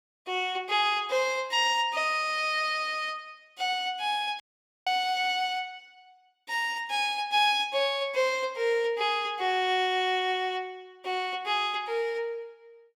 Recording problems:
dropout; at 4.5 s

